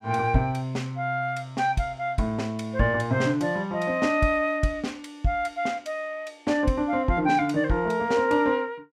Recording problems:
none

